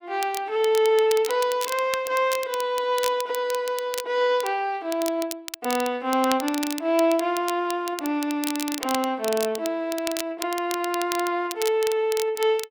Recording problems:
crackling; vinyl, SNR 10 dB

